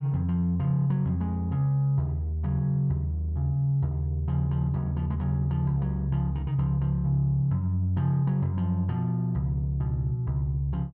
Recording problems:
none

